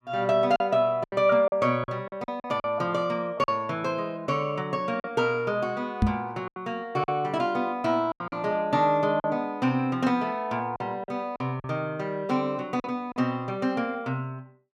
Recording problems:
lost packets; 7% of the sound replaced, filled with silence
knock on the microphone; at 6 s; peak +7 dB vs average level

